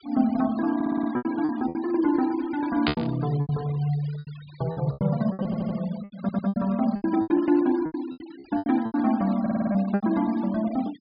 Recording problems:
treble missing; nothing above 5 kHz
noise reduction artefacts; signal-to-artefact ratio 21 dB
lost packets; 14% of the sound replaced, filled with repeated pitch periods
stutter; 4 times, first at 1 s
static burst; at 3 s; peak +4 dB vs average level

